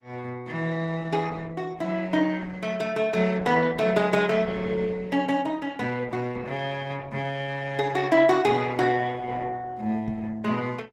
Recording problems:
lossy compression; Opus, log-spectral distance 3 dB
microphone thump; at 10 s; peak -3 dB vs average level

